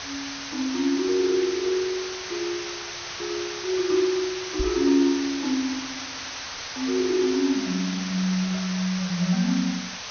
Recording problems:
treble cut off; nothing above 6.3 kHz
hiss; SNR 7 dB
microphone bump; at 4.5 s; peak -1 dB vs average level

